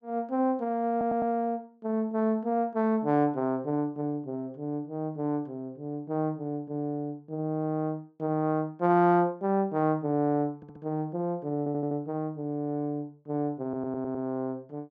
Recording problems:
stutter; 4 times, first at 1 s

